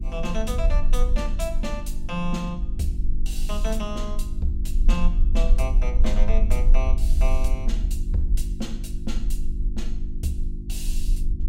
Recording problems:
hum; 50 Hz, harmonics up to 350 Hz, SNR 7 dB
low-frequency rumble; below 40 Hz, strongest tone 18 Hz, SNR -5 dB

